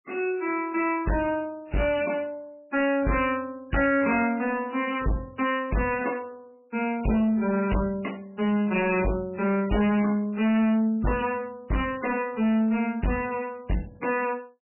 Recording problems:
codec artefacts; MP3, log-spectral distance 3 dB, nothing above 2.4 kHz
distorted audio; soft clipping, signal-to-distortion ratio 7 dB

